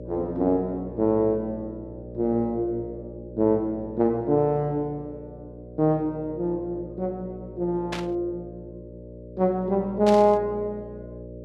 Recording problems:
hum; 60 Hz, harmonics up to 600 Hz, SNR 15 dB
burst of static; at 8 s and at 10 s; peak -3 dB vs average level

